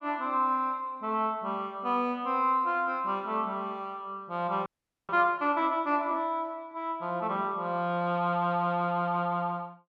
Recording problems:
frozen audio; at 4.5 s

